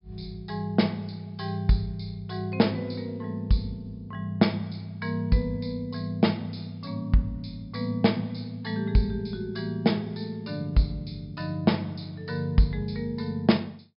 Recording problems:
low-pass filter; nothing above 5.5 kHz

